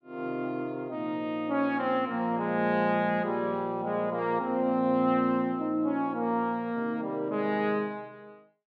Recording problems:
none

